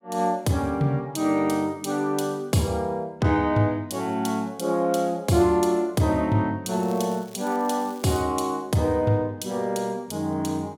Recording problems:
crackling; from 6.5 to 8 s; loose cable, SNR 24 dB

